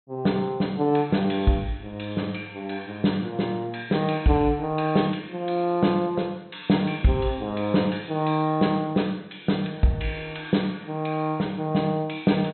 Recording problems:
treble cut off; nothing above 4.1 kHz

